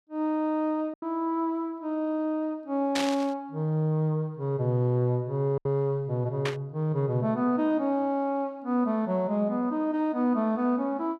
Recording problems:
lost packets; 1.4% of the sound replaced, filled with silence
burst of static; at 3 s and at 6.5 s; peak +1 dB vs average level

